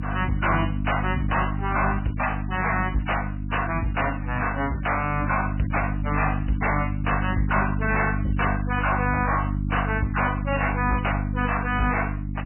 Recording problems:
codec artefacts; MP3, log-spectral distance 6 dB, nothing above 3 kHz
distorted audio; hard clipping, signal-to-distortion ratio 6 dB
hum; 50 Hz, harmonics up to 300 Hz, SNR 2 dB

